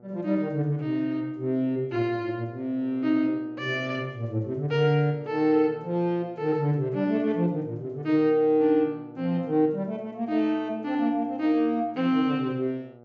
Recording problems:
low-pass filter; nothing above 8 kHz
hum; 60 Hz, harmonics up to 1.3 kHz, SNR 24 dB

